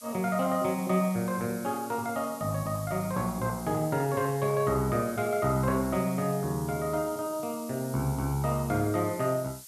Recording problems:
hiss; SNR 15 dB

